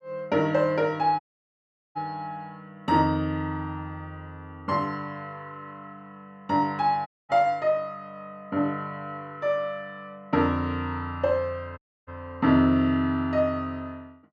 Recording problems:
dropout; at 1 s for 1 s, at 7 s and at 12 s

